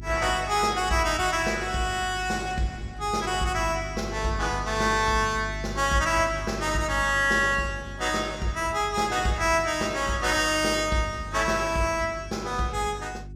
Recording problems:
hum; 50 Hz, harmonics up to 400 Hz, SNR 14 dB

